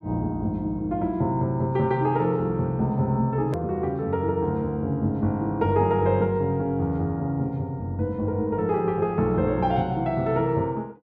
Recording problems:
edit click; at 3.5 s

